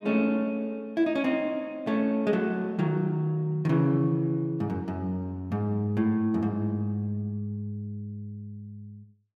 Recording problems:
none

